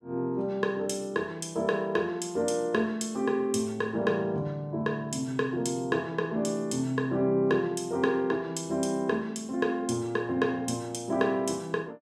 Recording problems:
none

